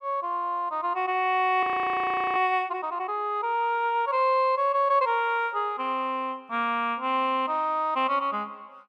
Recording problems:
frozen audio; at 1.5 s for 0.5 s

